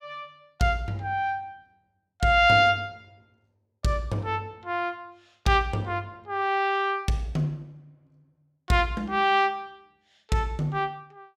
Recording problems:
none

